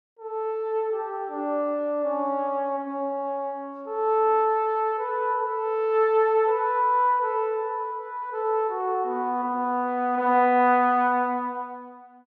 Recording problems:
none

